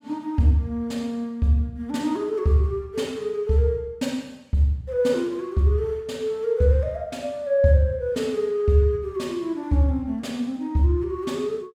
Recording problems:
none

